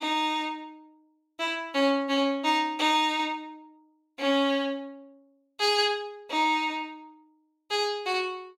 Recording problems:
none

